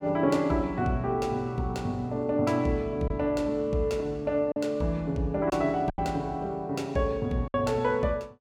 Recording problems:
packet loss; 3% of the sound replaced, filled with silence

